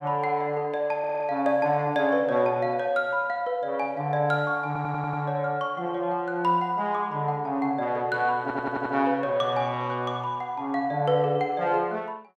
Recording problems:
stutter; at 1 s, at 4.5 s and at 8.5 s

